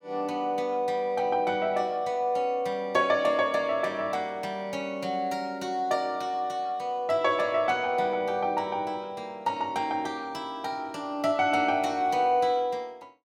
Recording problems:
none

